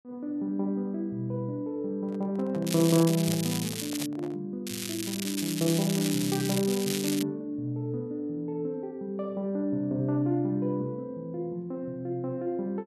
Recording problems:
microphone handling noise; from 2 to 4.5 s; peak -10 dB vs average level
crackling; from 2.5 to 4 s and from 4.5 to 7 s; loose cable, SNR 4 dB

